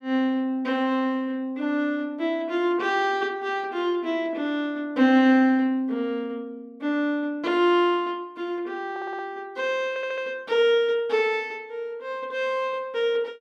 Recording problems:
stutter; at 9 s and at 10 s

